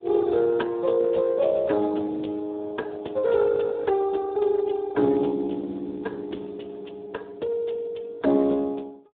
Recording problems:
phone line; 240 Hz to 2.5 kHz, Speex

